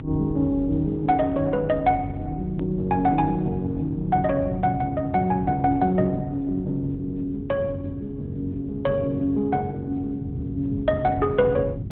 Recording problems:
treble missing; nothing above 4 kHz
codec artefacts; Opus, log-spectral distance 2 dB
electrical hum; 50 Hz, harmonics up to 400 Hz, SNR 15 dB
rumble; below 120 Hz, SNR 9 dB
click at an edit; at 2.5 s

